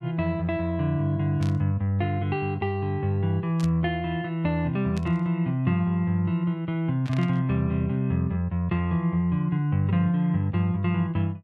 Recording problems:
burst of static; 4 times, first at 1.5 s; peak -11 dB vs average level

